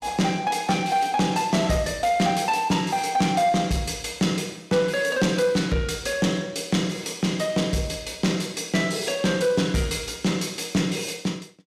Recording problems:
distortion; soft clipping, signal-to-distortion ratio 12 dB

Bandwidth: 14.5 kHz